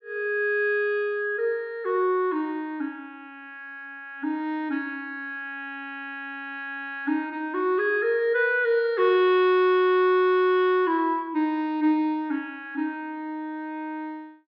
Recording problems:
low-pass filter; nothing above 5.5 kHz

